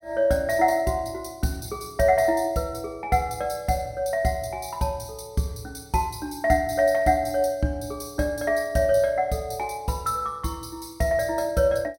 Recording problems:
none

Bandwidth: 16.5 kHz